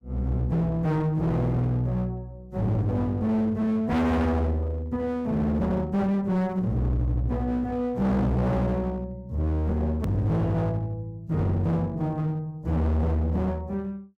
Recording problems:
distorted audio; hard clipping, uneven, signal-to-distortion ratio 5 dB
click at an edit; at 10 s

